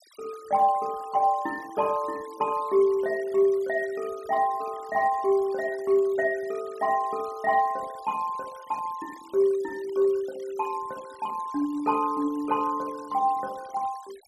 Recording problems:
denoising artefacts; signal-to-artefact ratio 23 dB

